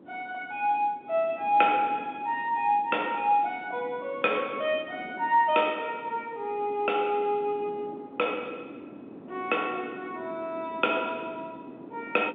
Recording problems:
phone line; 240 Hz to 3.7 kHz, G.711
wind noise; below 440 Hz, SNR 17 dB

